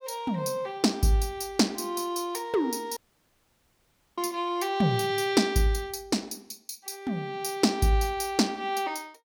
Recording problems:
dropout; at 3 s for 1 s

